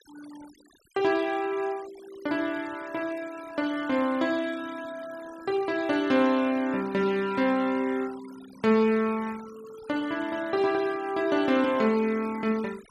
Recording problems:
noise reduction artefacts; signal-to-artefact ratio 20 dB

